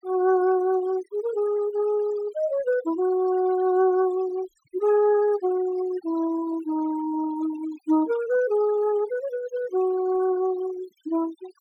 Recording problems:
denoising artefacts; signal-to-artefact ratio 19 dB

